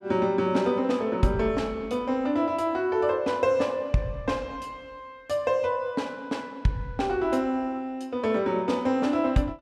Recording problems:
none

